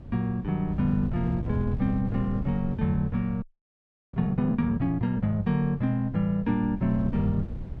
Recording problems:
wind noise; below 150 Hz, SNR 10 dB
audio freezing; at 3.5 s for 0.5 s

